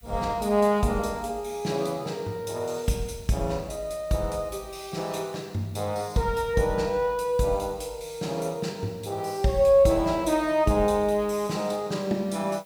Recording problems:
background hiss; slope +1 dB per octave, SNR 29 dB

